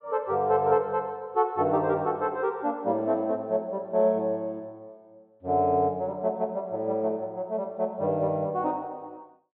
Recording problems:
treble missing; nothing above 4 kHz

